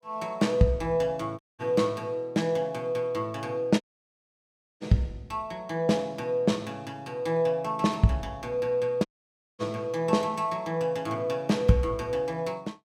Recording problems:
dropout; at 1.5 s, at 4 s for 1 s and at 9 s for 0.5 s

